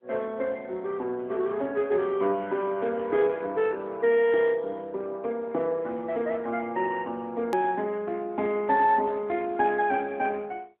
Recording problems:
phone line; 220 Hz to 3.7 kHz, AMR-NB
hard cut with a click; at 7.5 s

